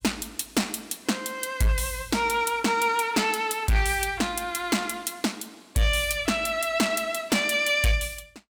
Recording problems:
distorted audio; hard clipping, uneven, signal-to-distortion ratio 12 dB

